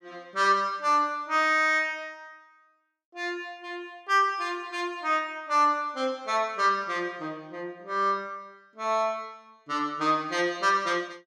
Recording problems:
none

